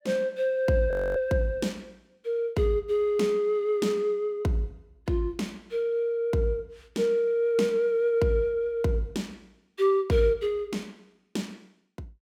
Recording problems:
audio freezing; at 1 s

